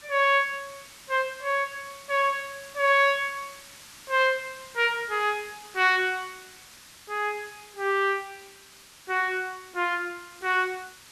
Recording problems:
hiss; slope +1 dB per octave, SNR 20 dB

